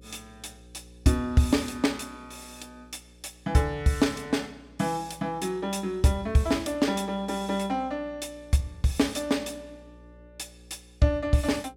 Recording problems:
electrical hum; 60 Hz, harmonics up to 540 Hz, SNR 25 dB

